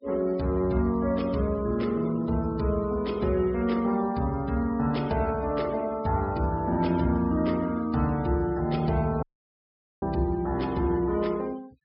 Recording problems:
treble cut off; nothing above 5.5 kHz
denoising artefacts; signal-to-artefact ratio 22 dB
audio cutting out; at 9 s for 1 s

